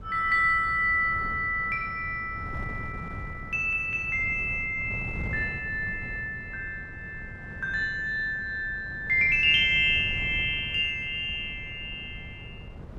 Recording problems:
wind noise; below 200 Hz, SNR 15 dB

